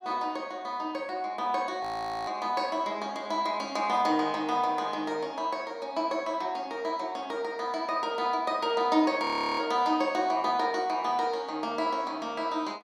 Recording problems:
audio freezing; at 2 s and at 9 s

